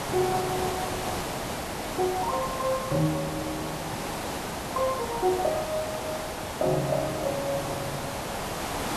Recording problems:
background hiss; SNR 2 dB

